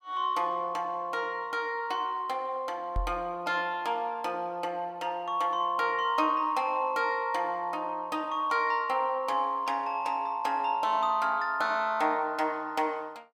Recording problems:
microphone bump; at 3 s; peak -1 dB vs average level

